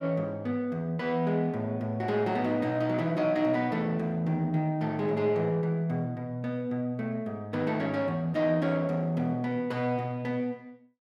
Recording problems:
none

